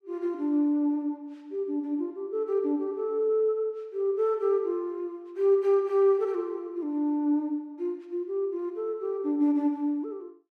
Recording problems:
none

